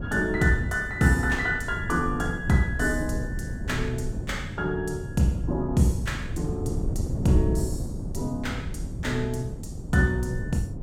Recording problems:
wind on the microphone; below 180 Hz, SNR 6 dB

